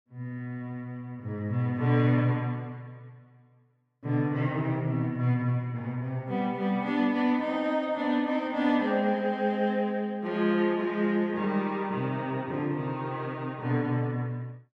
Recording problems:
none

